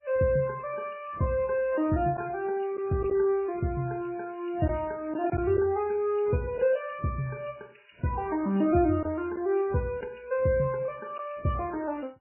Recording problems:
lossy compression; MP3, then AAC, log-spectral distance 4 dB, nothing above 2.8 kHz
packet loss; 1.3% of the sound replaced, filled with silence

